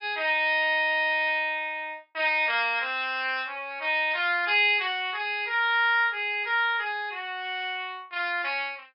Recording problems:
treble missing; nothing above 5.5 kHz

